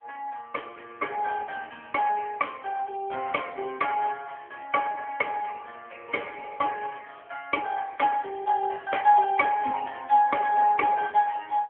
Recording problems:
telephone audio; 260 Hz to 3.3 kHz, AMR-NB

